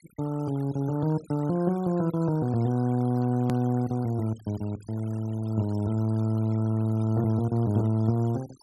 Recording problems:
denoising artefacts; signal-to-artefact ratio 23 dB
hard cut with a click; at 3.5 s

